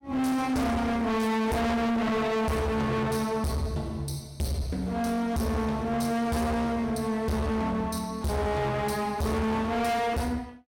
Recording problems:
distorted audio; hard clipping, uneven, signal-to-distortion ratio 5 dB

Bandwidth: 16.5 kHz